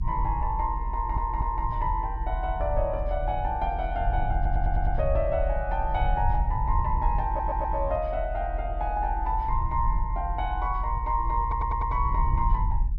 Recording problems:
rumble; below 60 Hz, strongest tone 40 Hz, SNR 1 dB
stutter; 4 times, first at 1 s

